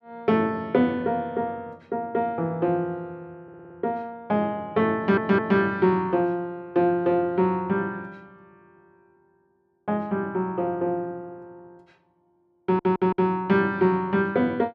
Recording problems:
stutter; at 3.5 s, at 5 s and at 13 s

